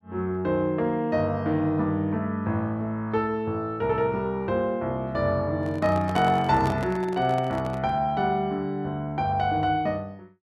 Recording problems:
handling noise; from 5.5 to 8 s; peak -3 dB vs average level

